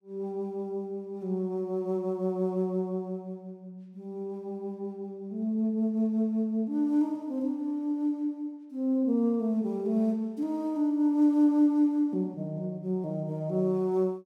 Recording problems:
none

